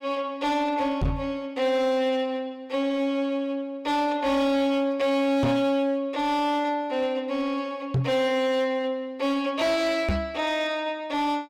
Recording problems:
distortion; hard clipping, signal-to-distortion ratio 11 dB
knock on the microphone; 4 times, first at 1 s; peak +4 dB vs average level

